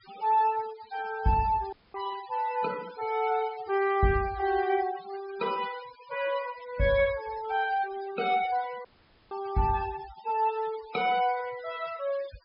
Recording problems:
low-pass filter; nothing above 5.5 kHz
noise reduction artefacts; signal-to-artefact ratio 17 dB
dropout; at 1.5 s and at 9 s

